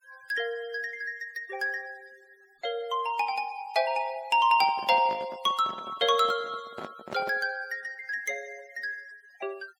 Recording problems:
denoising artefacts; signal-to-artefact ratio 25 dB
microphone handling noise; from 4.5 to 7.5 s; peak -5 dB vs average level

